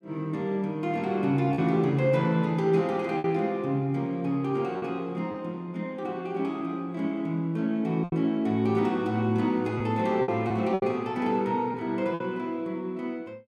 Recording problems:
lost packets; 4% of the sound replaced, filled with repeated pitch periods

